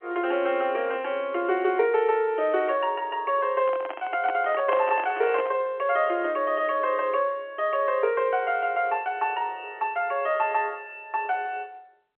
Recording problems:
telephone audio; 300 Hz to 3.3 kHz, G.711
microphone handling noise; from 3.5 to 5.5 s; peak -2 dB vs average level

